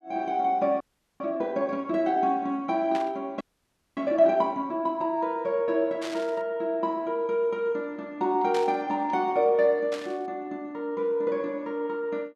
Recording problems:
frozen audio; at 1 s and at 3.5 s for 0.5 s
static burst; 4 times, first at 3 s; peak -7 dB vs average level

